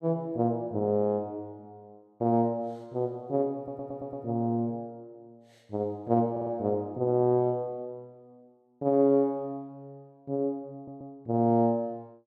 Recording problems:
audio stuttering; at 3.5 s, at 6.5 s and at 11 s

